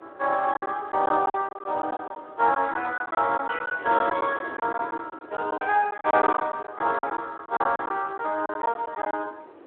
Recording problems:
telephone audio; 280 Hz to 3.3 kHz, Speex
wind on the microphone; below 780 Hz, SNR 18 dB
lost packets; 12% of the sound replaced, filled with silence

